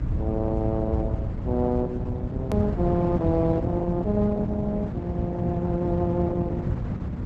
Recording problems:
codec artefacts; Opus, log-spectral distance 2 dB, nothing above 13.1 kHz
hum; 60 Hz, harmonics up to 300 Hz, SNR 9 dB
rumble; below 130 Hz, SNR 0 dB
edit click; at 2.5 s

